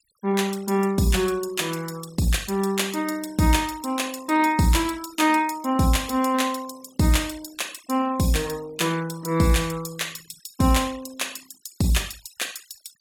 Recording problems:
denoising artefacts; signal-to-artefact ratio 21 dB

